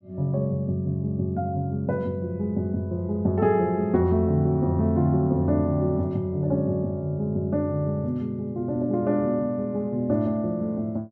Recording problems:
none

